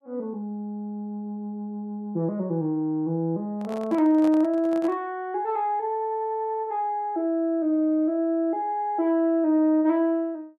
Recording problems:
microphone handling noise; from 3.5 to 5 s; peak -9 dB vs average level

